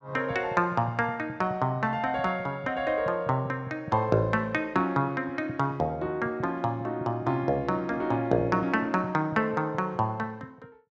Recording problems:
none

